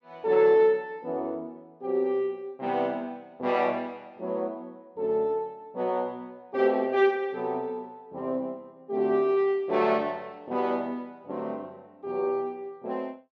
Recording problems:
none

